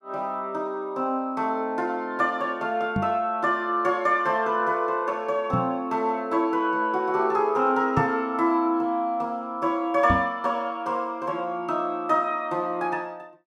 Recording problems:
knock on the microphone; 4 times, first at 3 s; peak +3 dB vs average level

